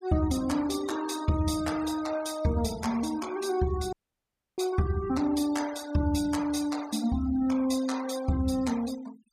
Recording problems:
denoising artefacts; signal-to-artefact ratio 16 dB
audio cutting out; at 4 s for 0.5 s

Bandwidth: 15.5 kHz